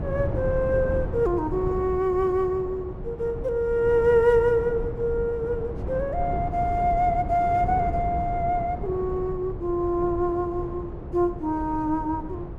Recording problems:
wind on the microphone; below 300 Hz, SNR 8 dB

